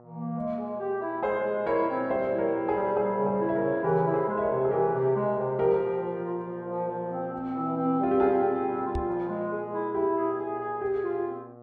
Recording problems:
electrical hum; 60 Hz, harmonics up to 1.4 kHz, SNR 19 dB
knock on the microphone; at 9 s; peak -2 dB vs average level

